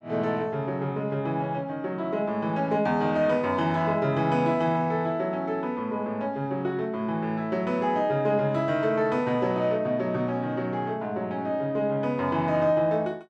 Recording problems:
none

